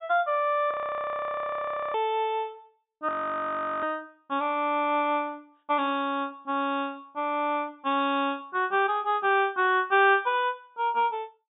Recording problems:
low-pass filter; nothing above 4 kHz
audio freezing; at 0.5 s for 1 s and at 3 s for 0.5 s

